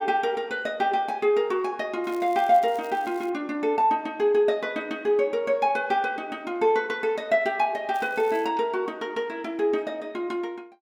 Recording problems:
crackling; from 2 to 3.5 s and at 8 s; loose cable, SNR 26 dB

